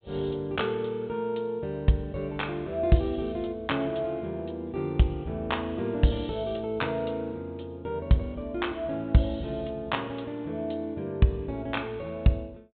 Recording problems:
treble cut off; nothing above 4 kHz

